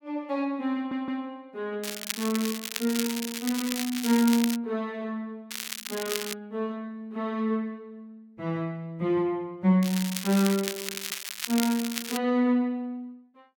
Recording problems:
audio stuttering; at 1 s
crackle; from 2 to 4.5 s, at 5.5 s and from 10 to 12 s; loose cable, SNR 5 dB

